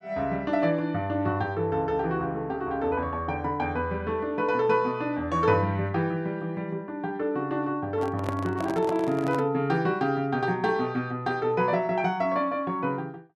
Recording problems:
handling noise; from 8 to 9.5 s; peak -2 dB vs average level

